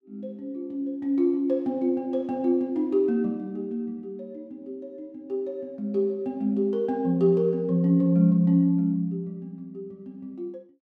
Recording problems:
none

